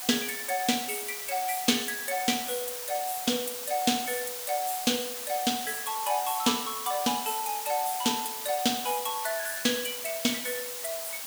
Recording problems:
background hiss; SNR 5 dB

